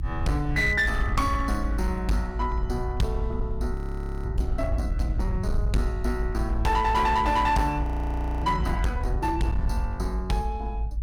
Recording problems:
distortion; hard clipping, uneven, signal-to-distortion ratio 12 dB
low-frequency rumble; below 68 Hz, strongest tone 52 Hz, SNR 3 dB
audio freezing; at 3.5 s for 0.5 s and at 8 s for 0.5 s

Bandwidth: 17 kHz